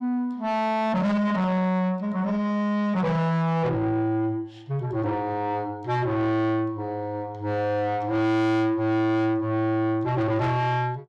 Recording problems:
distorted audio; soft clipping, signal-to-distortion ratio 7 dB

